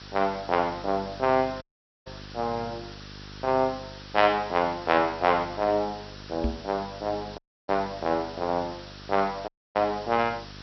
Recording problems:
treble cut off; nothing above 5.7 kHz
hum; 50 Hz, harmonics up to 600 Hz, SNR 19 dB
background hiss; SNR 18 dB
dropout; at 1.5 s, at 7.5 s and at 9.5 s
microphone thump; at 6.5 s; peak +2 dB vs average level

